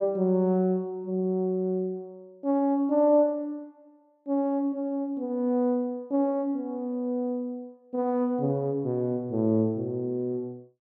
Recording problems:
none

